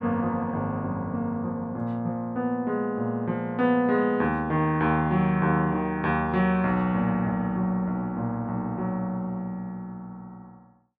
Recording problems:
none

